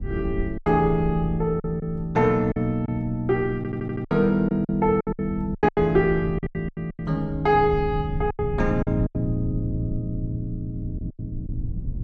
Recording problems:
rumble; below 120 Hz, SNR 10 dB
lost packets; 11% of the sound replaced, filled with silence
audio stuttering; at 3.5 s

